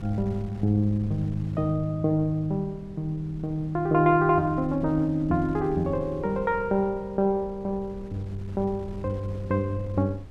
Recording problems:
wind noise; below 150 Hz, SNR 17 dB

